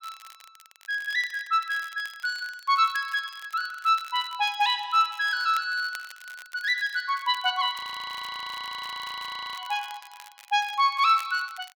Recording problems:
crackle; vinyl, SNR 22 dB
frozen audio; at 8 s for 2 s

